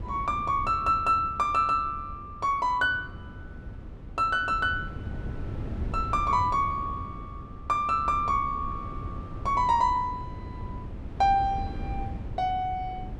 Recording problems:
wind on the microphone; below 190 Hz, SNR 12 dB

